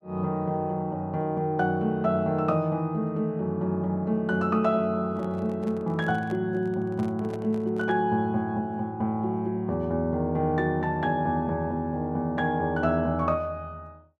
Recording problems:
handling noise; from 5 to 8 s; peak -11 dB vs average level

